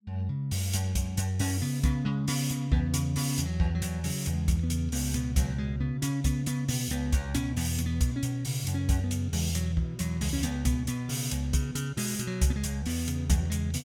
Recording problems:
none

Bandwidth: 17 kHz